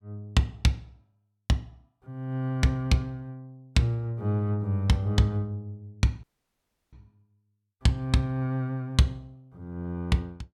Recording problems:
dropout; at 6 s for 0.5 s

